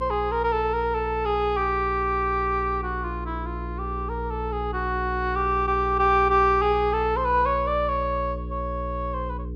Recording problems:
hum; 60 Hz, harmonics up to 480 Hz, SNR 9 dB

